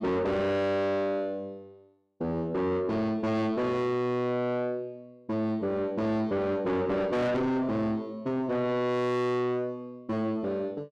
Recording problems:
distorted audio; soft clipping, signal-to-distortion ratio 7 dB

